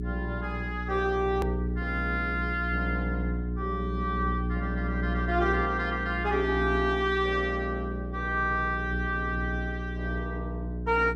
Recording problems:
electrical hum; 60 Hz, harmonics up to 420 Hz, SNR 3 dB
hard cut with a click; at 1.5 s

